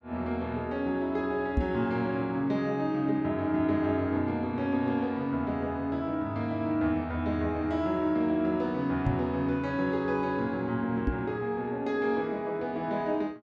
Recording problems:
microphone thump; at 1.5 s, at 9 s and at 11 s; peak +5 dB vs average level

